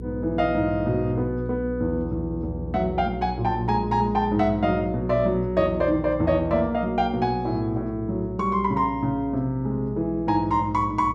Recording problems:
electrical hum; 60 Hz, harmonics up to 480 Hz, SNR 11 dB

